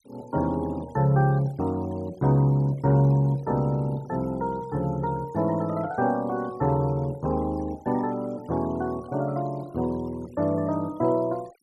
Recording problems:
denoising artefacts; signal-to-artefact ratio 25 dB

